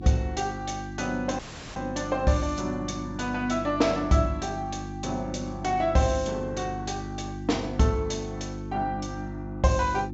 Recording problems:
treble cut off; nothing above 7.1 kHz
lossy codec; G.722, log-spectral distance 3 dB
hum; 50 Hz, harmonics up to 350 Hz, SNR 9 dB
audio cutting out; at 1.5 s

